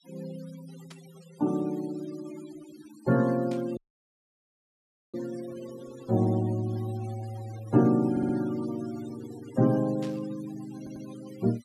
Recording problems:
denoising artefacts; signal-to-artefact ratio 21 dB
static burst; at 1 s, at 3.5 s and at 10 s; peak -13 dB vs average level
audio cutting out; at 4 s for 1.5 s
stutter; at 8 s and at 11 s

